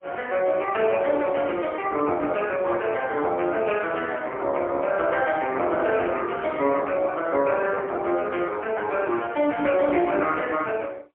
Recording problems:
phone line; 260 Hz to 3.4 kHz, AMR-NB, then MP3

